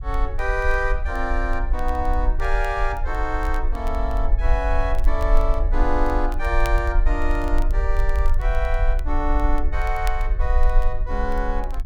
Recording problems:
low-frequency rumble; below 44 Hz, SNR -1 dB
crackling; vinyl, SNR 22 dB

